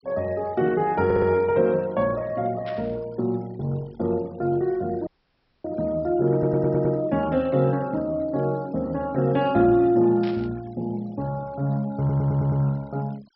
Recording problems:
treble missing; nothing above 5.6 kHz
noise reduction artefacts; signal-to-artefact ratio 27 dB
stutter; at 1 s, at 6.5 s and at 12 s
static burst; at 2.5 s and at 10 s; peak -12 dB vs average level
audio cutting out; at 5 s for 0.5 s

